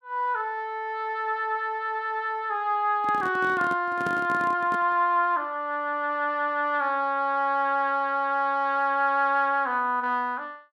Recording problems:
microphone handling noise; from 3 to 5 s; peak -4 dB vs average level

